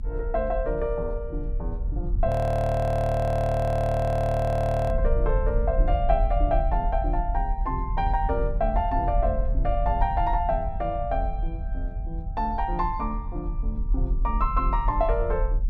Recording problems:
rumble; below 66 Hz, strongest tone 34 Hz, SNR 2 dB
audio freezing; at 2.5 s for 2.5 s

